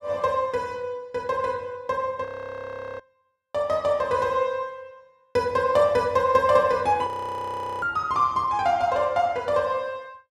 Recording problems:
audio freezing; at 2.5 s for 0.5 s and at 7 s for 1 s

